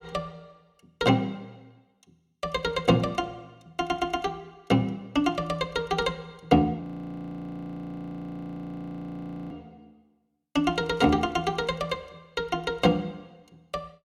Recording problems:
audio freezing; at 7 s for 2.5 s

